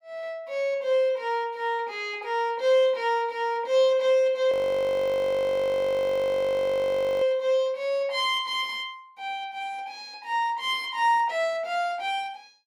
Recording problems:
audio freezing; at 4.5 s for 2.5 s

